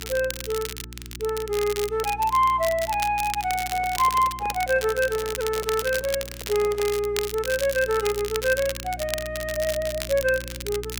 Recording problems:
electrical hum; 60 Hz, harmonics up to 360 Hz, SNR 16 dB
crackle; vinyl, SNR 9 dB
microphone handling noise; from 3.5 to 7 s; peak -9 dB vs average level

